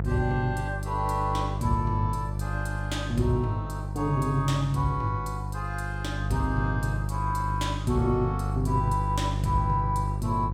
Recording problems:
hum; 50 Hz, harmonics up to 500 Hz, SNR 2 dB

